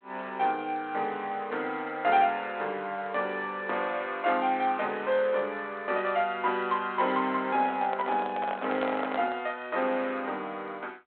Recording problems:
phone line; 280 Hz to 3.5 kHz, G.726
handling noise; from 7.5 to 9.5 s; peak 0 dB vs average level

